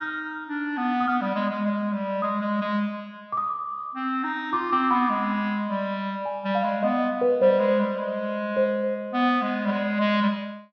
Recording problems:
treble cut off; nothing above 6.4 kHz

